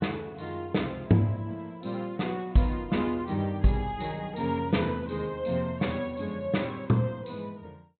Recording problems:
treble missing; nothing above 4 kHz

